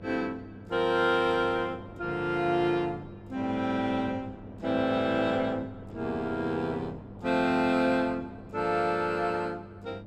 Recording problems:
hum; 50 Hz, harmonics up to 700 Hz, SNR 19 dB
wind on the microphone; below 520 Hz, SNR 20 dB

